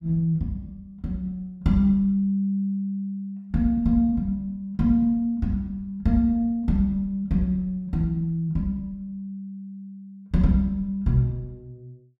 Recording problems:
none

